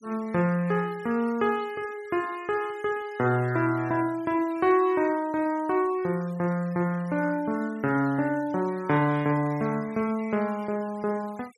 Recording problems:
noise reduction artefacts; signal-to-artefact ratio 24 dB

